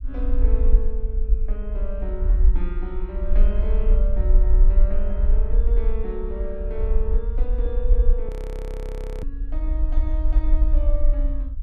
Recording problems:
rumble; below 48 Hz, SNR -11 dB
audio freezing; at 8.5 s for 1 s

